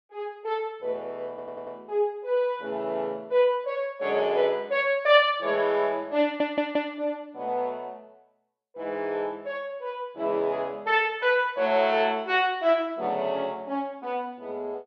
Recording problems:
audio stuttering; at 1.5 s and at 6 s

